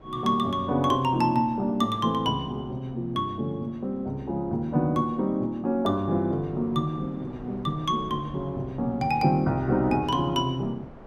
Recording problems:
wind on the microphone; below 630 Hz, SNR 22 dB

